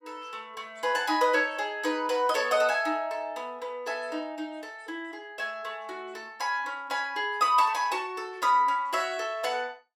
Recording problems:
none

